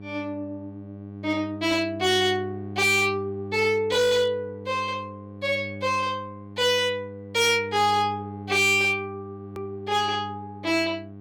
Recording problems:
distorted audio; hard clipping, signal-to-distortion ratio 11 dB
mains hum; 50 Hz, harmonics up to 800 Hz, SNR 15 dB
hard cut with a click; at 9.5 s

